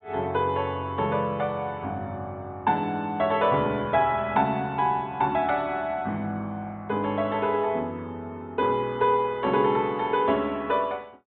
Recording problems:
treble cut off; nothing above 4 kHz

